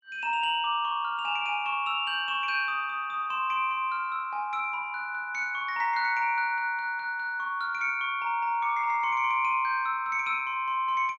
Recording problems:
none

